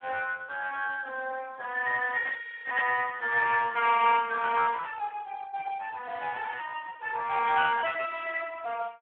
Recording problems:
telephone audio; 300 Hz to 3 kHz, Speex

